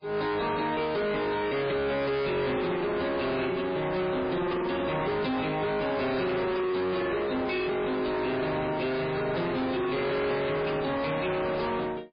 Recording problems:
lossy compression; MP3, log-spectral distance 4 dB, nothing above 4.5 kHz
distorted audio; soft clipping, signal-to-distortion ratio 5 dB

